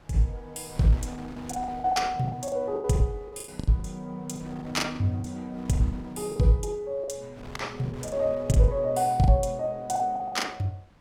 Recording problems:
wind noise; below 880 Hz, SNR 21 dB
packet loss; 13% of the sound replaced, filled with the last packet

